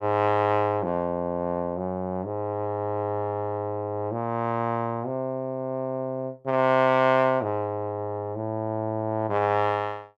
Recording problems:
none

